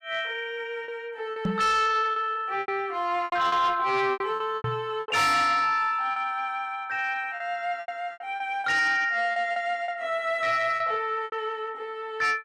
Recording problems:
distortion; soft clipping, signal-to-distortion ratio 10 dB
packet loss; 9% of the sound replaced, filled with repeated pitch periods
microphone thump; at 1.5 s and at 4.5 s; peak +2 dB vs average level

